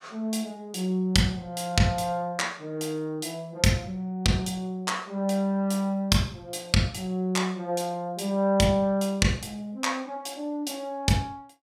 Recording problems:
none

